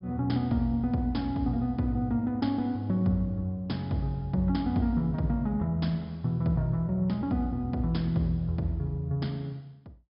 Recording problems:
low-pass filter; nothing above 5.5 kHz

